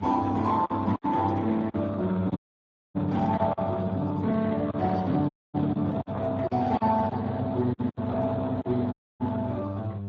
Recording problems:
lossy codec; Vorbis, then Speex, log-spectral distance 3 dB
hum; 50 Hz, harmonics up to 700 Hz, SNR 8 dB
packet loss; 7% of the sound replaced, filled with silence
audio cutting out; at 2.5 s for 0.5 s, at 5.5 s and at 9 s

